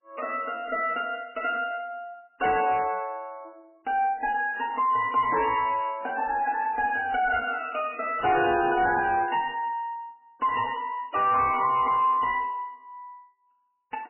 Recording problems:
lossy codec; MP3, log-spectral distance 4 dB, nothing above 2.9 kHz
distorted audio; soft clipping, signal-to-distortion ratio 10 dB

